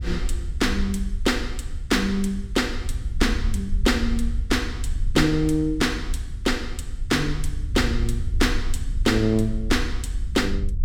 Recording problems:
rumble; below 64 Hz, SNR 5 dB

